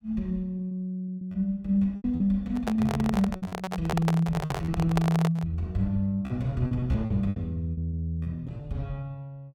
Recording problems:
lost packets; 12% of the sound replaced, filled with repeated pitch periods
handling noise; from 2.5 to 5.5 s; peak +3 dB vs average level

